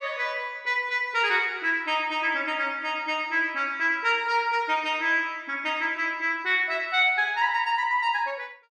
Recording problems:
none

